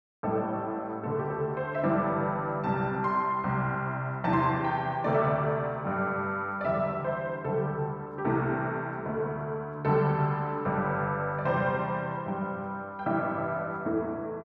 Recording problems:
none

